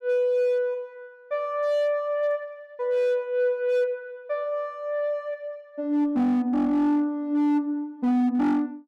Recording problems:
distorted audio; hard clipping, signal-to-distortion ratio 12 dB

